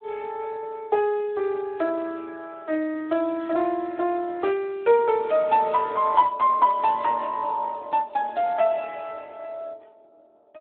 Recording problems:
phone line; 260 Hz to 3 kHz, Speex

